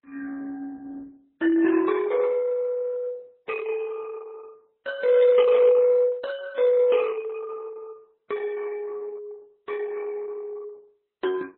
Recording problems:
codec artefacts; Opus, then MP3, log-spectral distance 3 dB, nothing above 3.6 kHz

